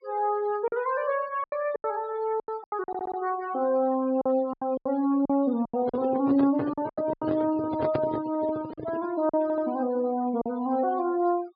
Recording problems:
treble cut off; nothing above 4.9 kHz
denoising artefacts; signal-to-artefact ratio 20 dB
packet loss; 10% of the sound replaced, filled with silence
stutter; at 3 s and at 9.5 s
microphone handling noise; from 6 to 9 s; peak +2 dB vs average level

